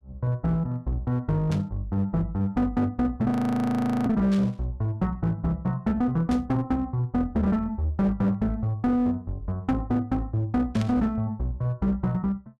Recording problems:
distorted audio; hard clipping, uneven, signal-to-distortion ratio 11 dB
burst of static; 4 times, first at 1.5 s; peak -9 dB vs average level
frozen audio; at 3.5 s for 1 s

